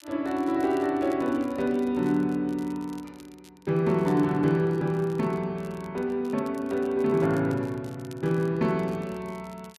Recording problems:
crackle; vinyl, SNR 27 dB

